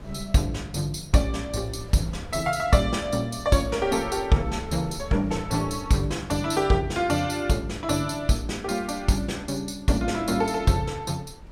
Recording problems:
wind on the microphone; below 220 Hz, SNR 20 dB

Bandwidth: 16 kHz